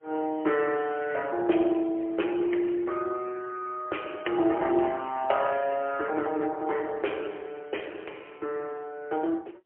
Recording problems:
telephone audio; 280 Hz to 3.1 kHz, AMR-NB, then MP3

